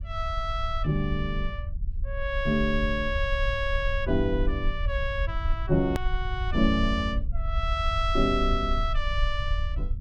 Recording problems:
rumble; below 60 Hz, SNR 3 dB
hard cut with a click; at 6 s

